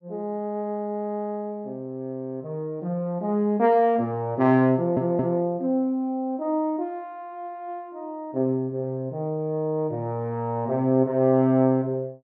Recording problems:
audio stuttering; at 5 s

